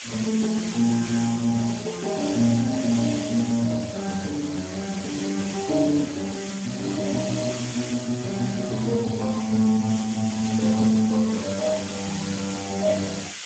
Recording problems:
codec artefacts; Speex, log-spectral distance 15 dB, nothing above 16 kHz
hiss; SNR 10 dB

